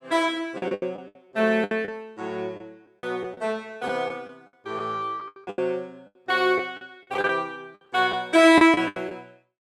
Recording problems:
packet loss; 12% of the sound replaced, filled with the last packet

